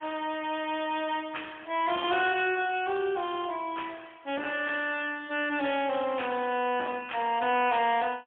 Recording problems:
phone line; 240 Hz to 3.5 kHz, AMR-NB, then MP3
distortion; soft clipping, signal-to-distortion ratio 11 dB

